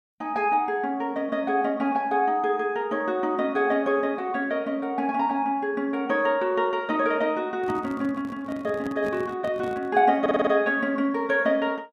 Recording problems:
microphone handling noise; from 7.5 to 10 s; peak -6 dB vs average level
stutter; at 10 s

